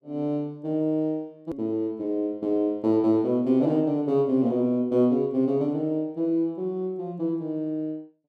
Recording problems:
click at an edit; at 1.5 s

